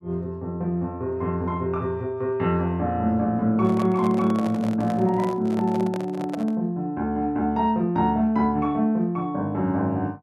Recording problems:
handling noise; from 3.5 to 6.5 s; peak -5 dB vs average level

